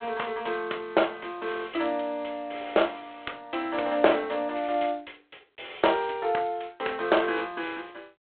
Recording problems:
phone line; 320 Hz to 3.4 kHz, G.726

